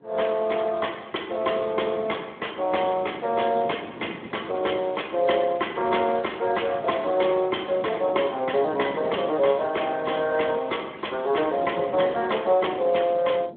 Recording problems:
phone line; 190 Hz to 3.3 kHz, Speex
wind on the microphone; below 470 Hz, SNR 18 dB

